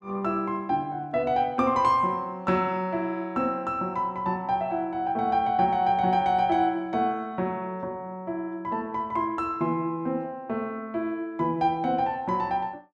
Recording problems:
none

